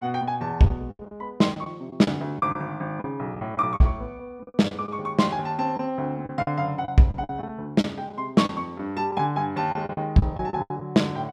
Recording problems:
lost packets; 11% of the sound replaced, filled with the last packet

